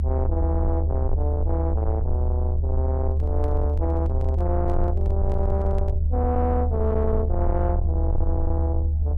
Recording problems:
distorted audio; soft clipping, signal-to-distortion ratio 12 dB
rumble; below 76 Hz, strongest tone 74 Hz, SNR -4 dB
microphone handling noise; from 3 to 6 s; peak -11 dB vs average level

